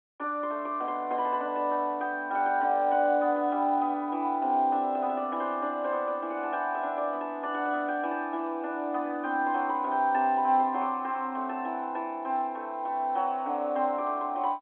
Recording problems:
phone line; 220 Hz to 3.5 kHz, G.711

